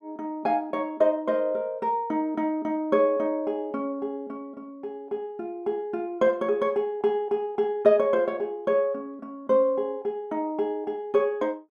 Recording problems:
none

